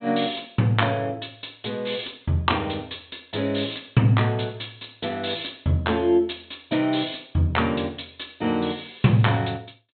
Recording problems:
treble cut off; nothing above 4 kHz

